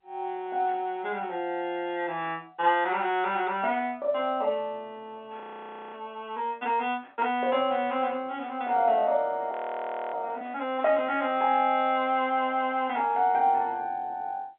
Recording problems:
phone line; 170 Hz to 3.4 kHz, G.711
audio freezing; at 5.5 s for 0.5 s and at 9.5 s for 0.5 s

